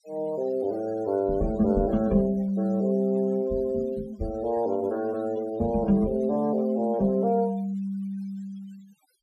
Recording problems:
denoising artefacts; signal-to-artefact ratio 24 dB

